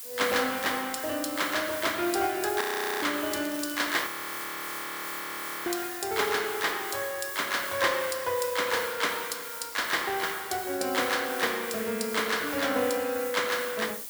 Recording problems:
background hiss; slope +1 dB per octave, SNR 8 dB
audio freezing; at 2.5 s and at 4 s for 1.5 s
crackling; at 3.5 s; loose cable, SNR 16 dB

